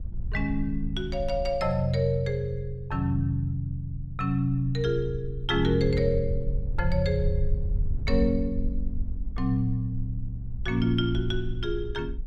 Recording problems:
wind on the microphone; below 56 Hz, SNR 7 dB

